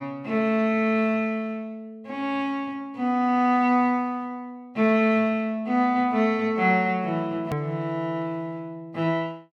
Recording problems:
hard cut with a click; at 7.5 s

